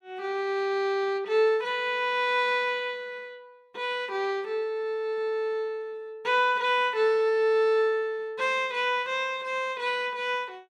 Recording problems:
none

